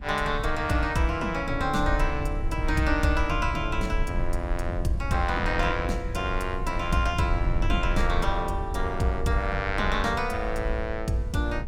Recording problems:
low-frequency rumble; below 70 Hz, SNR 5 dB

